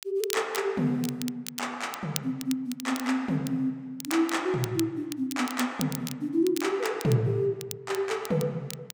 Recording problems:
crackling; vinyl, SNR 11 dB

